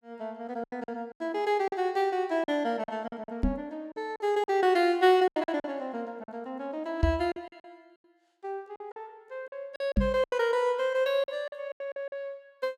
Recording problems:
packet loss; 12% of the sound replaced, filled with silence
knock on the microphone; at 3.5 s, at 7 s and at 10 s; peak +7 dB vs average level

